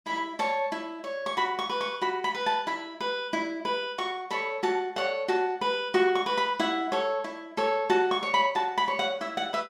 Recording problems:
none

